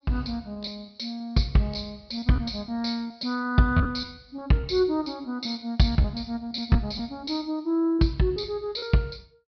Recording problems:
treble missing; nothing above 5.5 kHz
packet loss; 8% of the sound replaced, filled with repeated pitch periods

